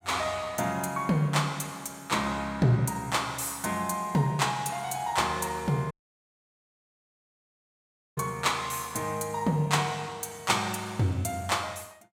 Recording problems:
audio cutting out; at 6 s for 2.5 s

